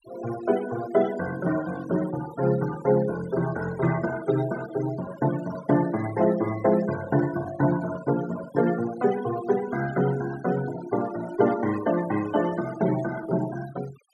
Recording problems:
noise reduction artefacts; signal-to-artefact ratio 15 dB

